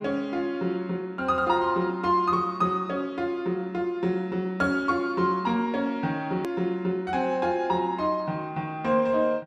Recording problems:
edit click; at 6.5 s

